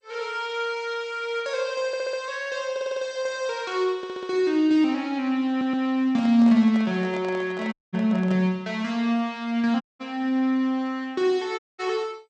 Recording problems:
lossy codec; MP2, log-spectral distance 2 dB, nothing above 7.8 kHz
stutter; 4 times, first at 2 s
handling noise; from 6 to 8.5 s; peak -9 dB vs average level
audio cutting out; at 7.5 s, at 10 s and at 12 s

